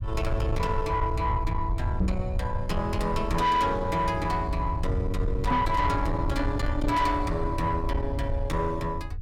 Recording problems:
distorted audio; soft clipping, signal-to-distortion ratio 11 dB
rumble; below 100 Hz, SNR 3 dB
microphone bump; at 2 s and at 5.5 s; peak +5 dB vs average level

